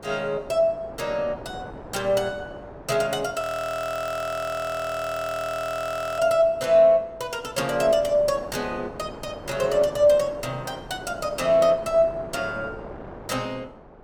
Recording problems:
wind on the microphone; below 780 Hz, SNR 17 dB
frozen audio; at 3.5 s for 3 s

